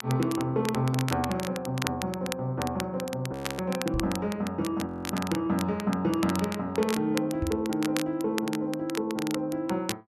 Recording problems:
crackle; vinyl, SNR 9 dB
audio freezing; at 3.5 s and at 5 s
microphone bump; at 4 s and at 7.5 s; peak 0 dB vs average level

